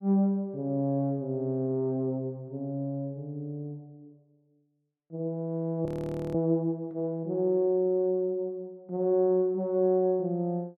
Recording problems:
audio freezing; at 6 s

